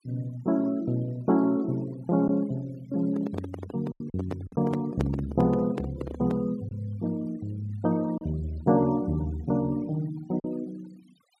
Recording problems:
noise reduction artefacts; signal-to-artefact ratio 23 dB
packet loss; 3% of the sound replaced, filled with silence
microphone handling noise; from 3 to 6.5 s; peak +2 dB vs average level

